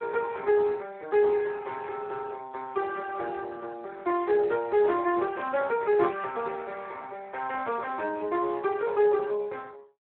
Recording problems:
telephone audio; 300 Hz to 2.8 kHz, Speex

